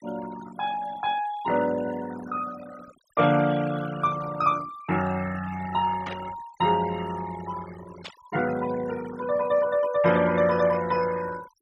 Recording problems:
noise reduction artefacts; signal-to-artefact ratio 15 dB
burst of static; at 6 s and at 8 s; peak -6 dB vs average level

